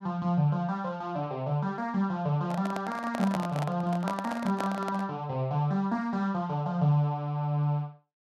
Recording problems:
microphone handling noise; from 2.5 to 5 s; peak 0 dB vs average level

